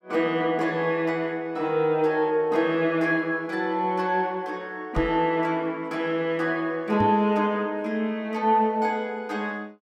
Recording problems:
knock on the microphone; at 5 s and at 7 s; peak -1 dB vs average level

